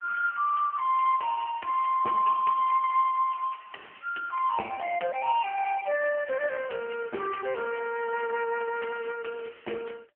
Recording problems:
phone line; 260 Hz to 2.7 kHz, AMR-NB

